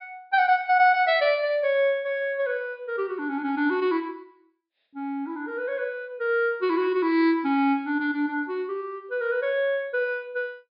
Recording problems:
treble cut off; nothing above 5.5 kHz

